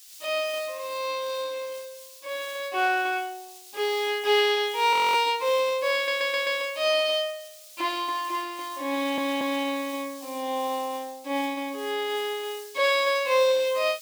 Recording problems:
hiss; SNR 18 dB
frozen audio; at 5 s
stutter; at 6 s and at 9 s

